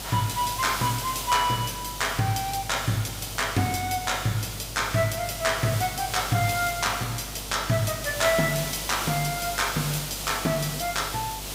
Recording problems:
hum; 50 Hz, harmonics up to 450 Hz, SNR 17 dB
hiss; SNR 7 dB

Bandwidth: 15.5 kHz